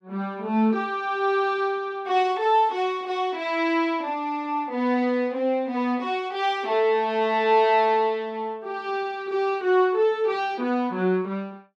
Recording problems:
none

